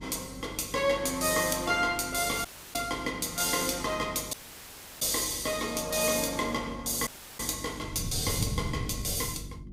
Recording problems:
electrical hum; 50 Hz, harmonics up to 350 Hz, SNR 18 dB
wind on the microphone; below 160 Hz, SNR 13 dB
audio cutting out; at 2.5 s, at 4.5 s for 0.5 s and at 7 s

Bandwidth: 15.5 kHz